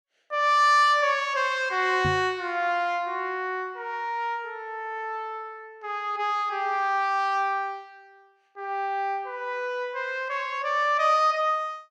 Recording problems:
microphone bump; at 2 s; peak -1 dB vs average level

